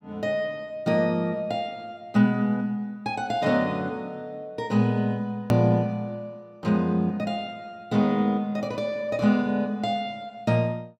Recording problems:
click at an edit; at 5.5 s

